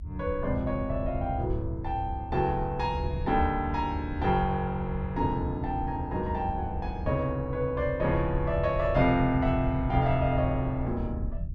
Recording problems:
rumble; below 86 Hz, SNR 7 dB

